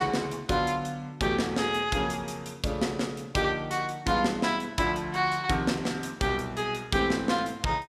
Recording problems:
none

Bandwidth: 15.5 kHz